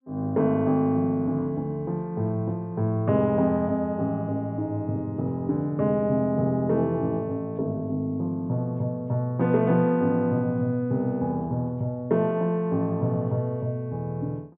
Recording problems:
treble missing; nothing above 4 kHz

